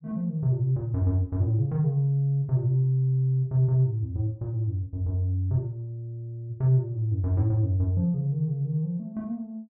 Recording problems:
none

